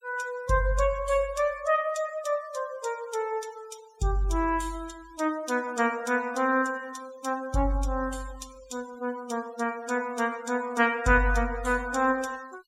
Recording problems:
denoising artefacts; signal-to-artefact ratio 20 dB

